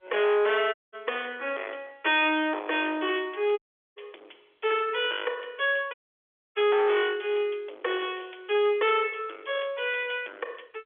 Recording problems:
telephone audio; 320 Hz to 3.4 kHz, G.711
distorted audio; hard clipping, uneven, signal-to-distortion ratio 6 dB
audio cutting out; at 0.5 s, at 3.5 s and at 6 s for 0.5 s

